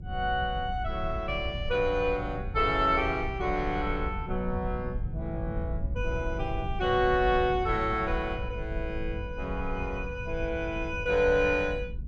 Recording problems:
rumble; below 94 Hz, SNR 7 dB

